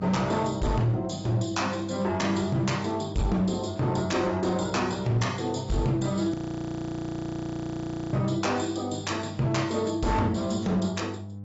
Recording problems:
treble missing; nothing above 7.6 kHz
lossy compression; AAC, log-spectral distance 3 dB
distorted audio; hard clipping, signal-to-distortion ratio 12 dB
hum; 50 Hz, harmonics up to 500 Hz, SNR 13 dB
frozen audio; at 6.5 s for 2 s

